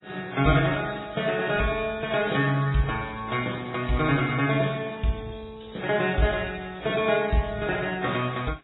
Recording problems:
lossy codec; AAC, then MP3, log-spectral distance 9 dB, nothing above 3.8 kHz

